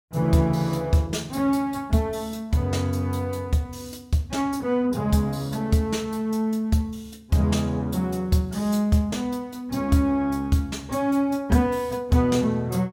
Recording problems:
none

